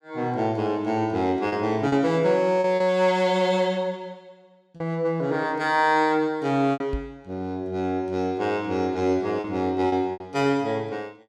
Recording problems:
packet loss; 4% of the sound replaced, filled with repeated pitch periods
microphone thump; at 7 s; peak -3 dB vs average level

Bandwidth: 16 kHz